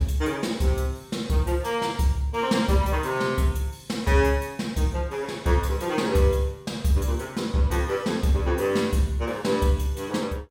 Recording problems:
none

